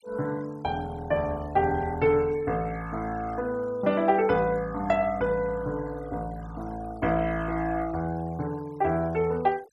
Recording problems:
noise reduction artefacts; signal-to-artefact ratio 22 dB

